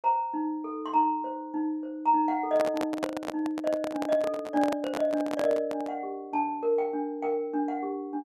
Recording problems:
handling noise; from 2.5 to 6 s; peak +2 dB vs average level

